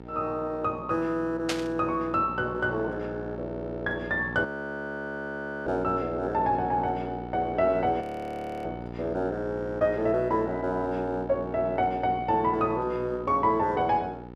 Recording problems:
hum; 60 Hz, harmonics up to 1.8 kHz, SNR 11 dB
static burst; at 1.5 s; peak +3 dB vs average level
frozen audio; at 4.5 s for 1 s and at 8 s for 0.5 s

